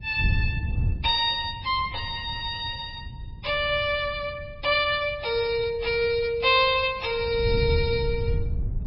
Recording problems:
lossy codec; MP3, log-spectral distance 3 dB, nothing above 4.8 kHz
wind noise; below 110 Hz, SNR 8 dB

